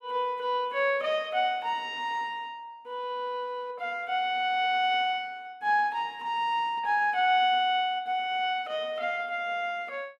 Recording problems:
none

